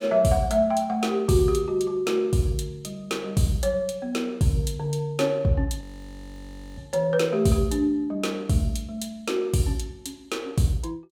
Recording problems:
audio freezing; at 6 s for 1 s

